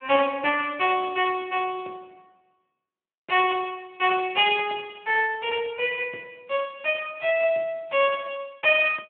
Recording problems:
phone line; 320 Hz to 3.2 kHz, Speex

